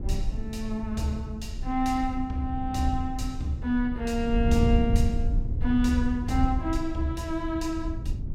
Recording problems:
rumble; below 86 Hz, SNR 3 dB

